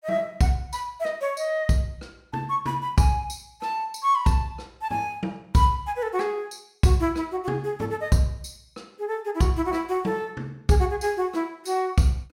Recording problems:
none

